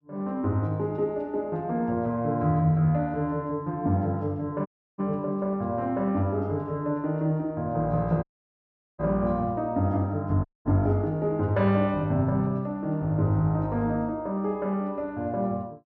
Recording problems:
audio cutting out; at 4.5 s, at 8 s for 1 s and at 10 s

